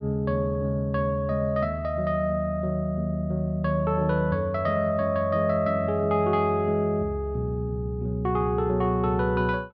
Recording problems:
none

